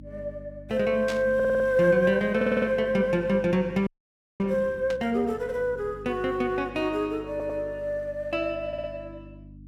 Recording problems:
hum; 50 Hz, harmonics up to 300 Hz, SNR 20 dB
static burst; at 1 s and at 5 s; peak -5 dB vs average level
audio stuttering; 4 times, first at 1.5 s
frozen audio; at 4 s for 0.5 s

